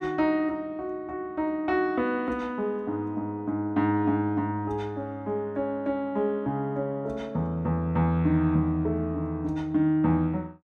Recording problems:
none

